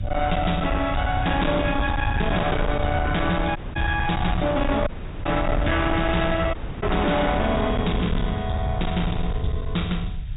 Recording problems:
treble missing; nothing above 4 kHz
distortion; hard clipping, signal-to-distortion ratio 7 dB
hiss; SNR 29 dB
rumble; below 150 Hz, SNR 4 dB
dropout; at 3.5 s, at 5 s and at 6.5 s

